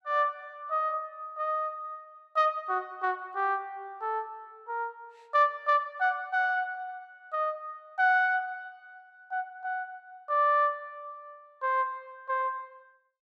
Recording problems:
none

